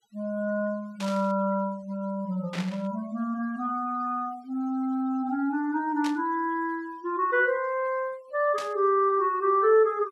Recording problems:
noise reduction artefacts; signal-to-artefact ratio 27 dB
static burst; 4 times, first at 1 s; peak -6 dB vs average level

